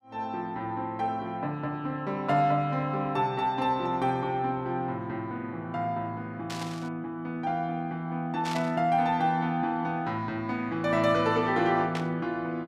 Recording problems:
burst of static; at 6.5 s, at 8.5 s and at 12 s; peak -4 dB vs average level

